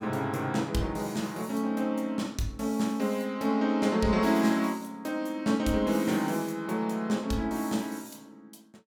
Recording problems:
none

